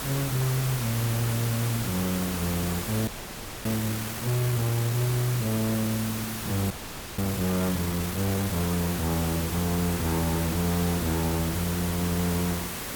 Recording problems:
distortion; hard clipping, signal-to-distortion ratio 8 dB
hum; 50 Hz, harmonics up to 400 Hz, SNR 19 dB
background hiss; slope -3 dB per octave, SNR 4 dB
frozen audio; at 3 s for 0.5 s and at 6.5 s

